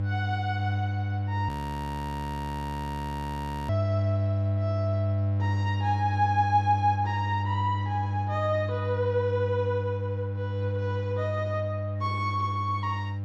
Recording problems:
hum; 50 Hz, harmonics up to 500 Hz, SNR 0 dB
frozen audio; at 1.5 s for 2 s

